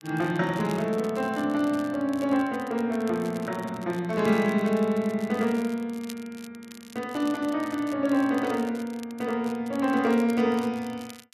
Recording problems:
crackling; vinyl, SNR 22 dB

